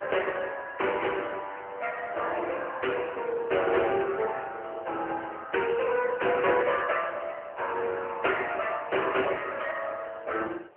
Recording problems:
telephone audio; 340 Hz to 3 kHz, AMR-NB
wind noise; below 1.1 kHz, SNR 24 dB

